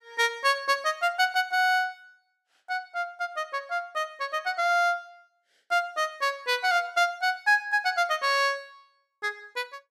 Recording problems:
none

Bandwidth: 14.5 kHz